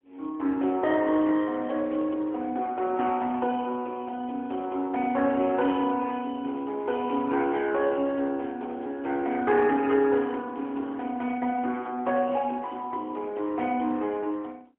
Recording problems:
telephone audio; 220 Hz to 3.3 kHz, AMR-NB, then MP3

